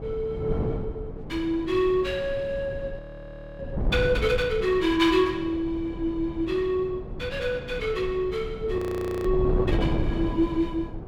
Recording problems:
wind noise; below 260 Hz, SNR 7 dB
frozen audio; at 3 s for 0.5 s and at 9 s

